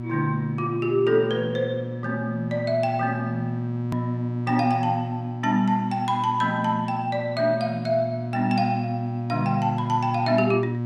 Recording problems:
hum; 60 Hz, harmonics up to 960 Hz, SNR 6 dB
click at an edit; at 4 s

